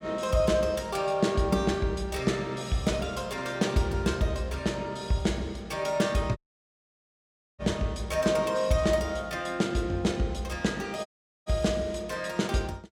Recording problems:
dropout; at 6.5 s for 1 s and at 11 s

